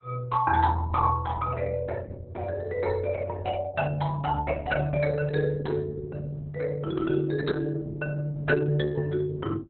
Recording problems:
codec artefacts; Opus, log-spectral distance 3 dB, nothing above 4 kHz

